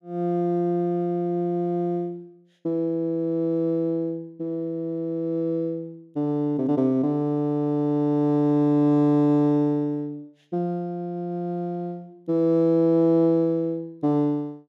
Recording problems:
none

